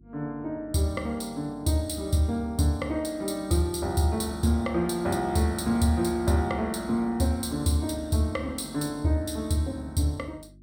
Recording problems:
hum; 50 Hz, harmonics up to 350 Hz, SNR 24 dB

